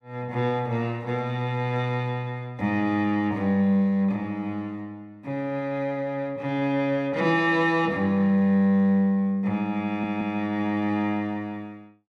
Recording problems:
stutter; at 10 s

